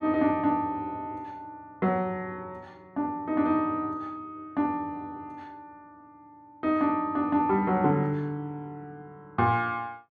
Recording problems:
none

